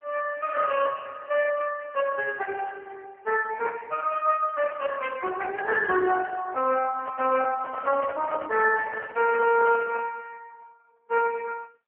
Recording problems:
phone line; 280 Hz to 2.7 kHz, AMR-NB
handling noise; from 7 to 10 s; peak -2 dB vs average level

